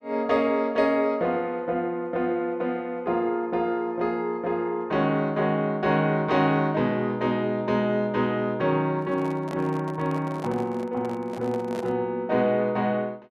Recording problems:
microphone handling noise; from 9 to 12 s; peak -7 dB vs average level

